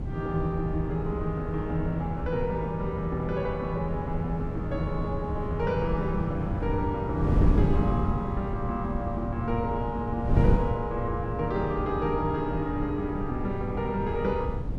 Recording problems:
wind noise; below 180 Hz, SNR 1 dB

